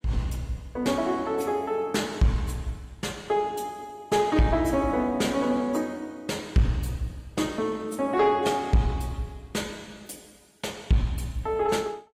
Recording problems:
codec artefacts; AAC, log-spectral distance 2 dB, nothing above 15.1 kHz
distortion; soft clipping, signal-to-distortion ratio 10 dB

